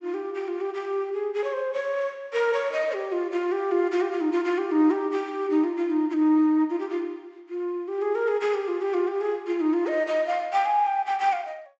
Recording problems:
treble cut off; nothing above 8 kHz

